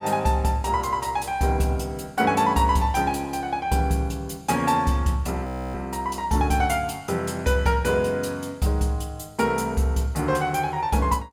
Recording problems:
frozen audio; at 5.5 s

